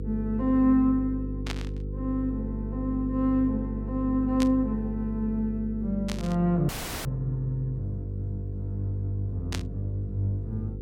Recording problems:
hum; 50 Hz, harmonics up to 500 Hz, SNR 7 dB
burst of static; 4 times, first at 1.5 s; peak -1 dB vs average level
audio cutting out; at 6.5 s

